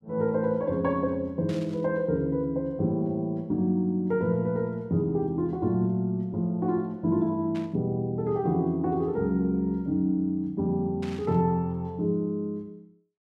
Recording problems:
burst of static; at 1.5 s, at 7.5 s and at 11 s; peak -12 dB vs average level

